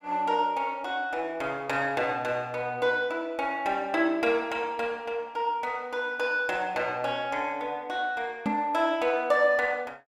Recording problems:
microphone thump; at 8.5 s; peak +2 dB vs average level

